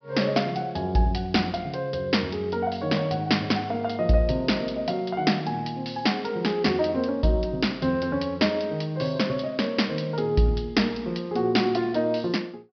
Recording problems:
treble cut off; nothing above 5.5 kHz

